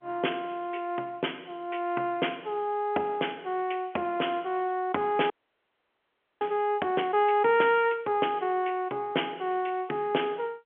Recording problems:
phone line; 280 Hz to 3.3 kHz, G.711
frozen audio; at 5.5 s for 1 s

